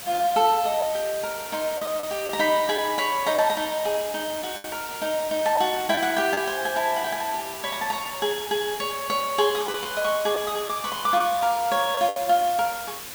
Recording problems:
background hiss; slope 0 dB per octave, SNR 10 dB
packet loss; 3% of the sound replaced, filled with the last packet

